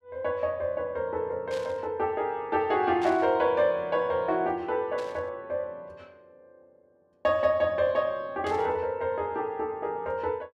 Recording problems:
burst of static; 4 times, first at 1.5 s; peak -10 dB vs average level

